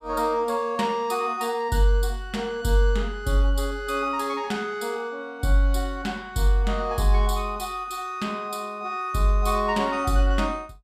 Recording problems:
none

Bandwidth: 14.5 kHz